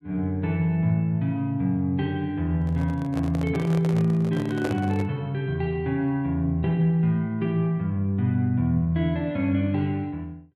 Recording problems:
microphone handling noise; from 2.5 to 5 s; peak -3 dB vs average level

